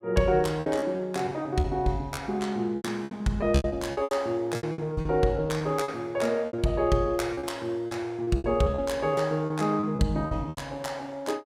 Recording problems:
packet loss; 14% of the sound replaced, filled with repeated pitch periods

